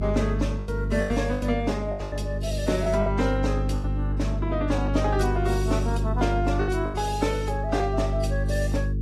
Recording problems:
codec artefacts; AAC, log-spectral distance 2 dB, nothing above 13.5 kHz
hum; 50 Hz, harmonics up to 450 Hz, SNR 1 dB
lost packets; 9% of the sound replaced, filled with the last packet

